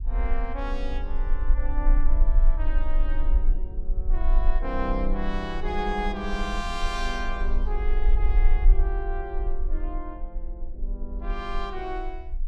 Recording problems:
low-frequency rumble; below 36 Hz, strongest tone 20 Hz, SNR -5 dB

